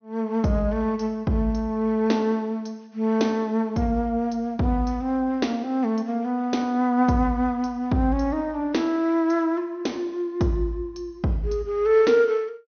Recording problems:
treble cut off; nothing above 6.2 kHz

